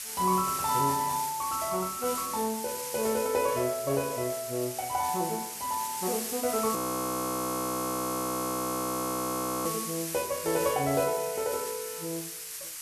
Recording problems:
background hiss; slope +4 dB per octave, SNR 5 dB
frozen audio; at 7 s for 3 s

